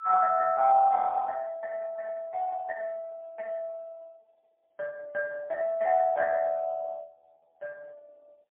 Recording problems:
telephone audio; 150 Hz to 2.2 kHz, AMR-NB, then MP3

